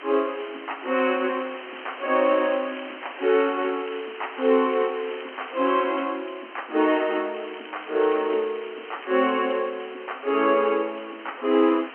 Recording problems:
telephone audio; 240 Hz to 3.2 kHz, G.711
hiss; SNR 16 dB
crackle; from 1.5 to 6 s and from 7.5 to 9.5 s; loose cable, SNR 21 dB

